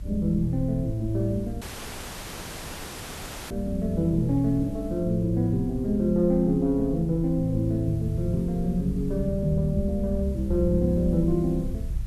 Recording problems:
background hiss; slope -3 dB per octave, SNR 30 dB
rumble; below 72 Hz, SNR 12 dB
audio cutting out; at 1.5 s for 2 s

